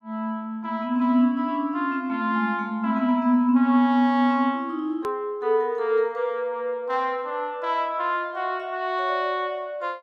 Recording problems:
click at an edit; at 5 s

